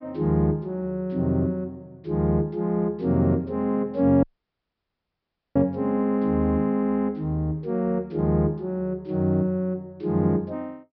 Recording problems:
treble missing; nothing above 5.5 kHz
dropout; at 4 s for 1.5 s

